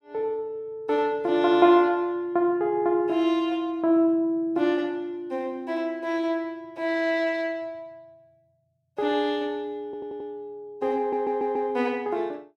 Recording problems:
audio stuttering; at 10 s and at 11 s

